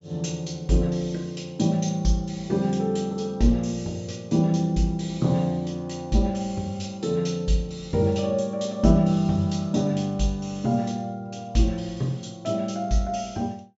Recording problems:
treble missing; nothing above 8 kHz

